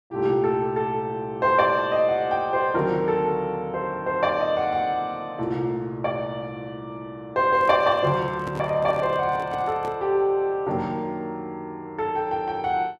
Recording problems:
microphone handling noise; from 7.5 to 10 s; peak -7 dB vs average level

